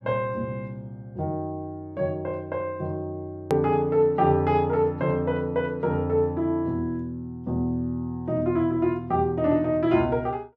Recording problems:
edit click; at 3.5 s

